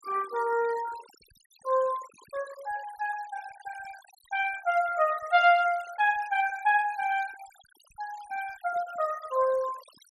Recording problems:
denoising artefacts; signal-to-artefact ratio 21 dB

